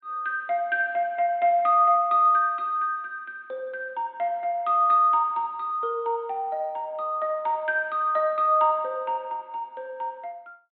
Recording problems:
treble cut off; nothing above 4 kHz

